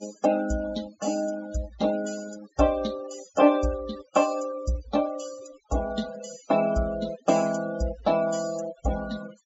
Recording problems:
treble missing; nothing above 8 kHz
denoising artefacts; signal-to-artefact ratio 16 dB

